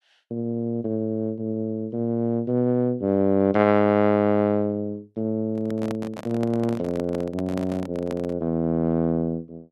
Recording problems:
microphone handling noise; from 5.5 to 8.5 s; peak -5 dB vs average level

